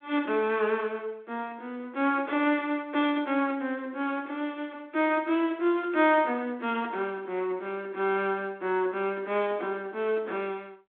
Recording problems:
telephone audio; 240 Hz to 3.6 kHz, G.726

